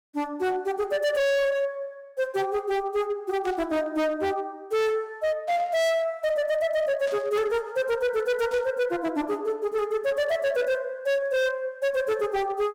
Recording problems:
distorted audio; hard clipping, signal-to-distortion ratio 7 dB
static burst; 4 times, first at 3.5 s; peak -13 dB vs average level

